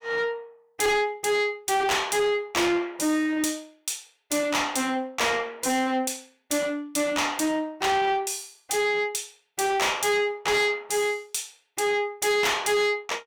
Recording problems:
distorted audio; soft clipping, signal-to-distortion ratio 8 dB

